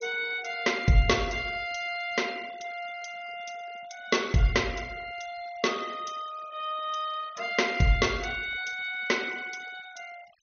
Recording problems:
treble missing; nothing above 6.5 kHz
denoising artefacts; signal-to-artefact ratio 19 dB

